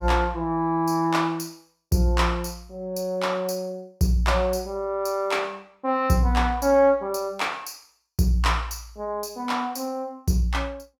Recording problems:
none

